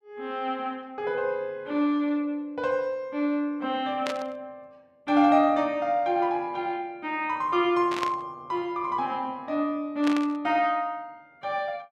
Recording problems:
static burst; at 4 s, at 8 s and at 10 s; peak -1 dB vs average level

